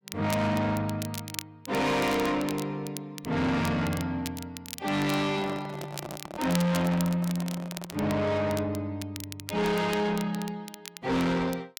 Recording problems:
distorted audio; soft clipping, signal-to-distortion ratio 7 dB
crackle; vinyl, SNR 13 dB
microphone handling noise; from 5 to 8 s; peak -6 dB vs average level

